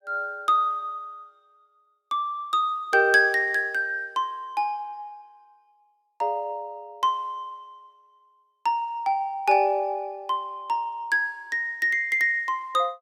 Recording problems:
none

